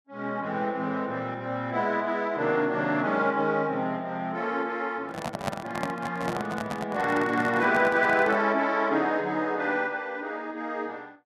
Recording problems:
microphone handling noise; from 5 to 8.5 s; peak +2 dB vs average level

